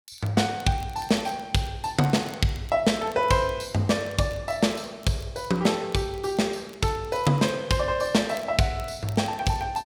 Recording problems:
crackling; vinyl, SNR 26 dB

